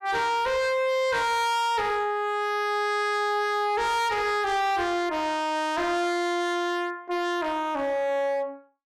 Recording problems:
distortion; hard clipping, signal-to-distortion ratio 7 dB

